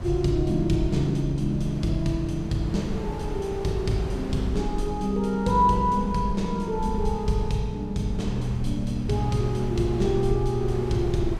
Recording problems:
low-frequency rumble; below 72 Hz, SNR 11 dB
wind on the microphone; below 370 Hz, SNR 13 dB

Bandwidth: 14.5 kHz